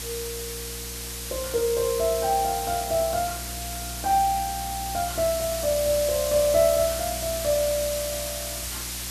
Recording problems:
electrical hum; 60 Hz, harmonics up to 360 Hz, SNR 14 dB
hiss; slope +1 dB per octave, SNR 6 dB

